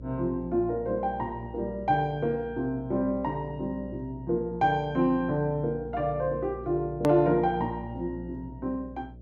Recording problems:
low-pass filter; nothing above 8 kHz
hum; 60 Hz, harmonics up to 660 Hz, SNR 16 dB
hard cut with a click; at 7 s

